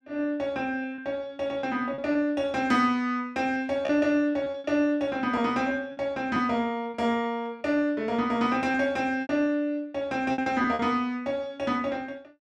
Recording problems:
packet loss; 6% of the sound replaced, filled with repeated pitch periods

